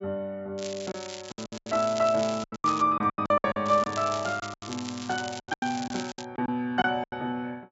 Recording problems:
low-pass filter; nothing above 8 kHz
lost packets; 15% of the sound replaced, filled with silence
crackle; from 0.5 to 3 s and from 3.5 to 6.5 s; loose cable, SNR 13 dB

